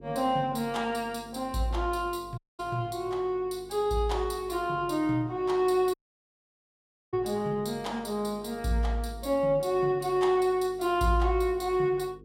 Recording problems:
hum; 50 Hz, harmonics up to 500 Hz, SNR 23 dB
dropout; at 2.5 s and at 6 s for 1 s

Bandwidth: 16 kHz